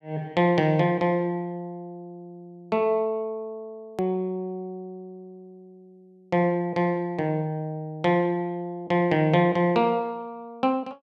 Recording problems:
click at an edit; at 4 s

